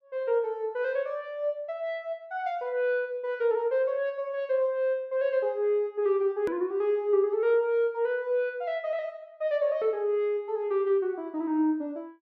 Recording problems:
hard cut with a click; at 6.5 s

